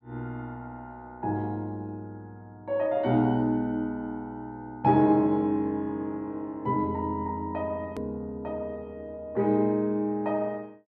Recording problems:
hard cut with a click; at 8 s

